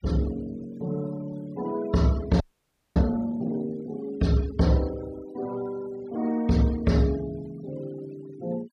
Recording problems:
denoising artefacts; signal-to-artefact ratio 21 dB
frozen audio; at 2.5 s for 0.5 s

